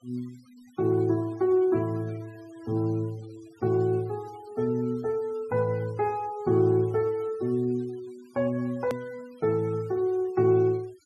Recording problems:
noise reduction artefacts; signal-to-artefact ratio 27 dB
hard cut with a click; at 9 s

